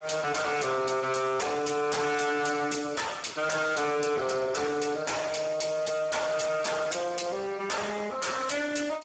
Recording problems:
codec artefacts; Speex, log-spectral distance 7 dB, nothing above 7.6 kHz
distortion; hard clipping, uneven, signal-to-distortion ratio 7 dB

